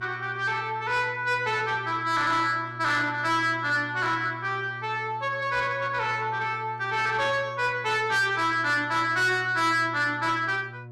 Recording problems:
distortion; soft clipping, signal-to-distortion ratio 11 dB
hum; 60 Hz, harmonics up to 960 Hz, SNR 18 dB

